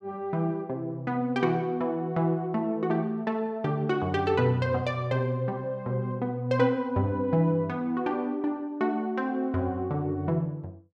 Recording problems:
none

